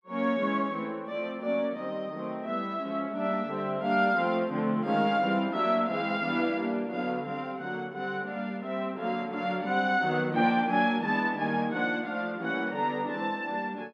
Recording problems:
none

